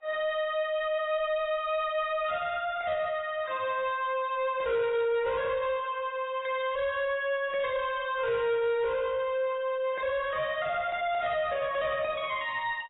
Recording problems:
lossy compression; AAC, log-spectral distance 2 dB, nothing above 3.7 kHz
distorted audio; soft clipping, signal-to-distortion ratio 11 dB

